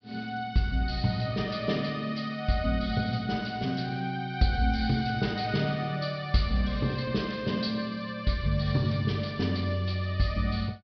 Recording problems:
treble missing; nothing above 5.5 kHz

